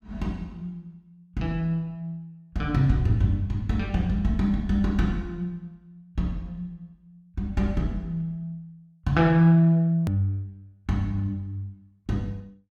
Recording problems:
edit click; at 10 s

